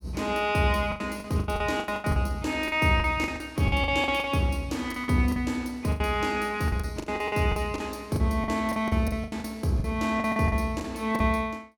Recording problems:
packet loss; 16% of the sound replaced, filled with the last packet

